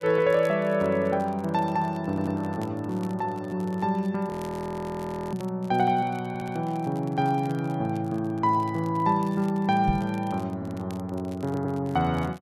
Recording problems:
crackle; vinyl, SNR 27 dB
stutter; 4 times, first at 2 s
frozen audio; at 4.5 s for 1 s
microphone bump; at 10 s; peak +3 dB vs average level

